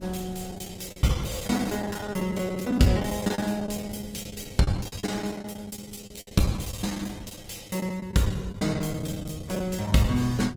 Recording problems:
lossy compression; Opus, log-spectral distance 5 dB, nothing above 19 kHz
wind on the microphone; below 190 Hz, SNR 17 dB
lost packets; 16% of the sound replaced, filled with the last packet

